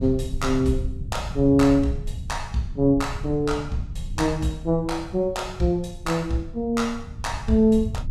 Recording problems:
low-frequency rumble; below 98 Hz, SNR 11 dB

